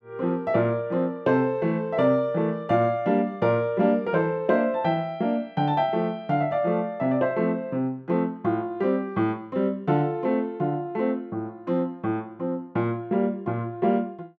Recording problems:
none

